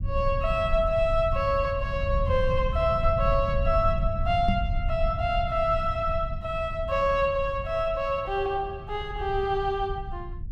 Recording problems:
low-frequency rumble; below 92 Hz, SNR 6 dB
knock on the microphone; at 4.5 s; peak +2 dB vs average level

